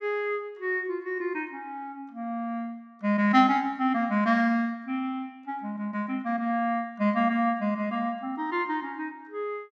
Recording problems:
none

